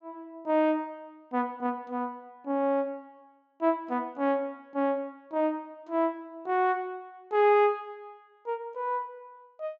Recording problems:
treble missing; nothing above 7.9 kHz

